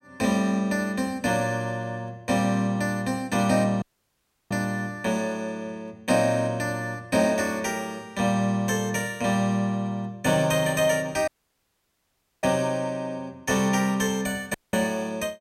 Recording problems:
audio cutting out; at 4 s for 0.5 s, at 11 s for 1 s and at 15 s

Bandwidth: 16 kHz